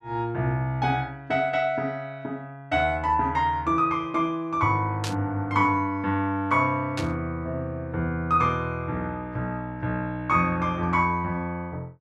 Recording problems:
burst of static; at 5 s and at 7 s; peak -3 dB vs average level

